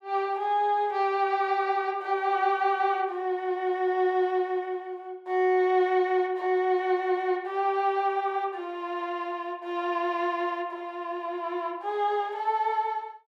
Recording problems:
none

